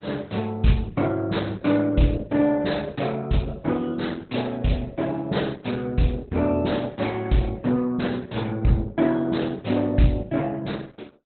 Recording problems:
lossy codec; Opus, log-spectral distance 5 dB, nothing above 4.1 kHz

